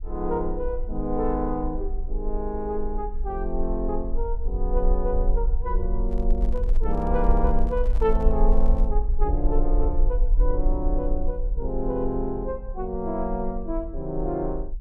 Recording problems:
rumble; below 40 Hz, strongest tone 20 Hz, SNR 0 dB
handling noise; from 6 to 9 s; peak -11 dB vs average level

